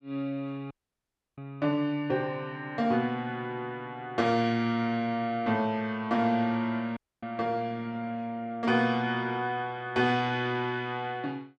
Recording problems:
dropout; at 0.5 s for 0.5 s and at 7 s

